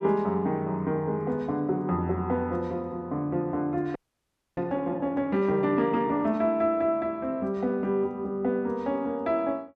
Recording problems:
audio freezing; at 4 s for 0.5 s

